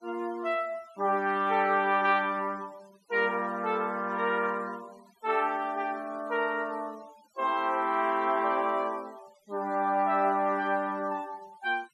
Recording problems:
denoising artefacts; signal-to-artefact ratio 26 dB

